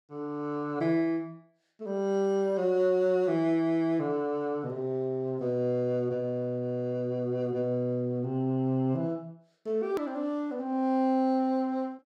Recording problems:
click at an edit; at 10 s

